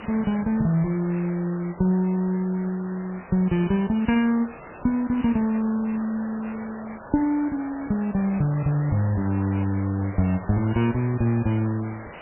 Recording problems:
lossy codec; MP3, log-spectral distance 10 dB, nothing above 2.4 kHz
hiss; SNR 16 dB

